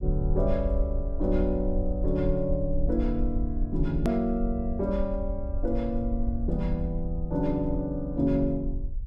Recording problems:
rumble; below 58 Hz, SNR 4 dB
click at an edit; at 4 s

